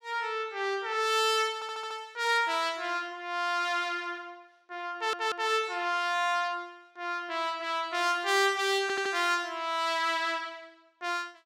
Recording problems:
audio stuttering; at 1.5 s, at 5 s and at 9 s

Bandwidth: 16.5 kHz